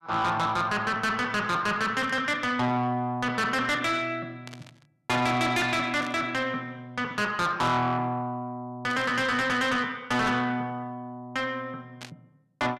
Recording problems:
distortion; soft clipping, signal-to-distortion ratio 8 dB
burst of static; 5 times, first at 2 s; peak -10 dB vs average level

